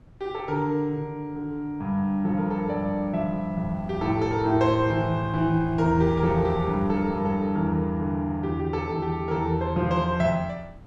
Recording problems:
wind noise; below 210 Hz, SNR 19 dB

